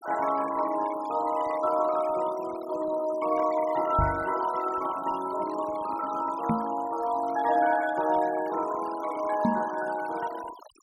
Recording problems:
noise reduction artefacts; signal-to-artefact ratio 16 dB
microphone thump; at 4 s, at 6.5 s and at 9.5 s; peak +5 dB vs average level

